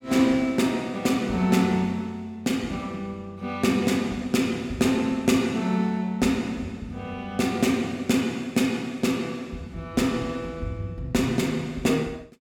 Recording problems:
none

